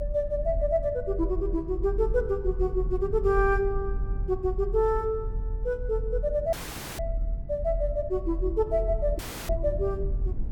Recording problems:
rumble; below 56 Hz, strongest tone 40 Hz, SNR 5 dB
audio cutting out; at 6.5 s and at 9 s

